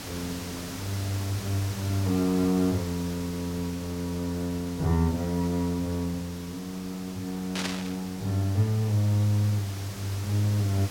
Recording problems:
background hiss; slope -2 dB per octave, SNR 12 dB
burst of static; at 7.5 s; peak +1 dB vs average level

